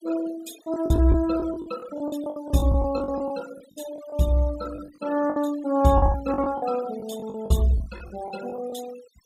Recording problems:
noise reduction artefacts; signal-to-artefact ratio 18 dB
lost packets; 13% of the sound replaced, filled with the last packet

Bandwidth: 15.5 kHz